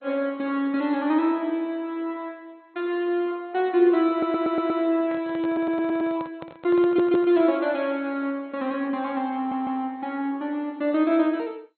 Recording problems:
lossy compression; MP2, log-spectral distance 2 dB, nothing above 4.1 kHz
audio stuttering; 4 times, first at 4 s
handling noise; from 5 to 7.5 s; peak -10 dB vs average level

